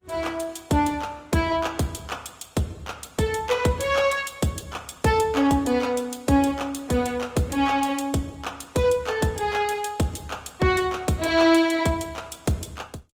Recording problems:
codec artefacts; Opus, log-spectral distance 4 dB, nothing above 18.5 kHz

